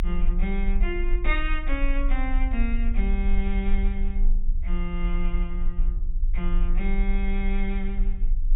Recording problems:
treble missing; nothing above 4 kHz
rumble; below 38 Hz, strongest tone 24 Hz, SNR -4 dB

